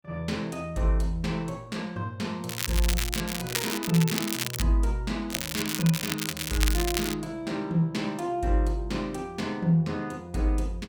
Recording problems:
crackling; at 2.5 s, from 3.5 to 4.5 s and from 5.5 to 7 s; loose cable, SNR 2 dB

